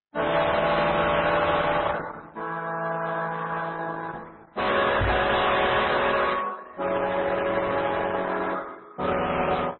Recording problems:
codec artefacts; Opus, then MP3, log-spectral distance 5 dB, nothing above 4 kHz
distorted audio; hard clipping, signal-to-distortion ratio 7 dB
knock on the microphone; at 5 s; peak +4 dB vs average level

